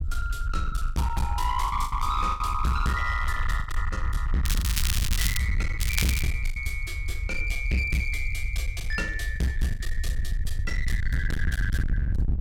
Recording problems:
distortion; hard clipping, uneven, signal-to-distortion ratio 7 dB
low-frequency rumble; below 72 Hz, SNR 1 dB
lost packets; 7% of the sound replaced, filled with the last packet
crackle; at 4.5 s and at 6 s; loose cable, SNR 1 dB

